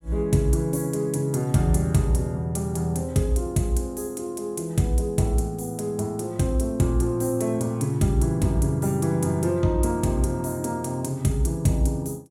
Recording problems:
none

